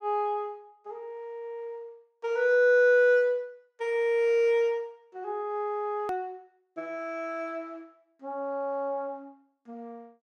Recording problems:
edit click; at 6 s

